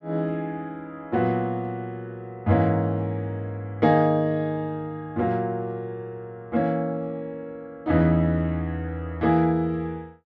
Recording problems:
none

